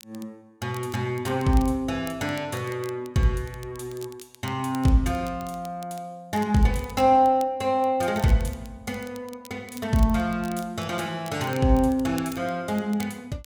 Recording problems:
crackle; vinyl, SNR 22 dB

